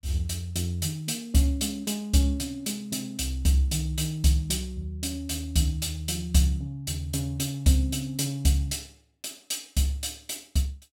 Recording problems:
none

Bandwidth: 17 kHz